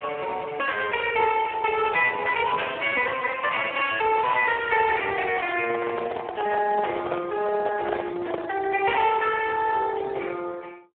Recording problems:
telephone audio; 340 Hz to 2.6 kHz, Speex
crackling; from 4 to 5.5 s; loose cable, SNR 18 dB
microphone handling noise; from 5.5 to 8.5 s; peak -1 dB vs average level

